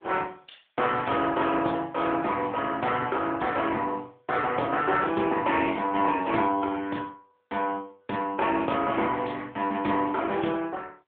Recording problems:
telephone audio; 260 Hz to 3.4 kHz, AMR-NB

